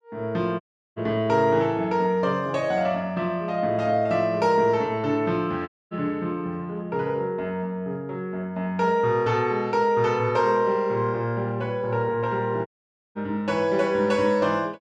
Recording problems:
dropout; at 0.5 s, at 5.5 s and at 13 s

